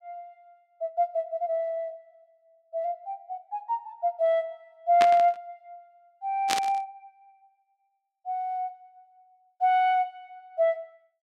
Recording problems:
static burst; at 5 s and at 6.5 s; peak +4 dB vs average level

